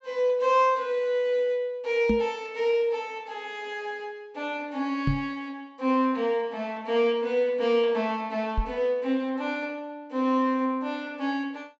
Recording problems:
treble missing; nothing above 7.8 kHz
microphone bump; at 2 s, at 5 s and at 8.5 s; peak +4 dB vs average level

